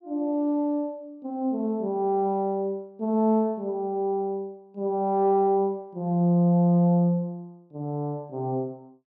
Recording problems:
none

